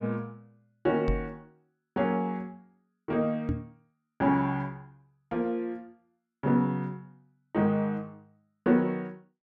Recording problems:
knock on the microphone; at 1 s and at 3.5 s; peak +3 dB vs average level

